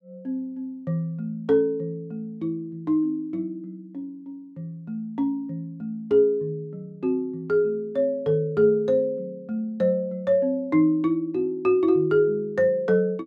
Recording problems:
none

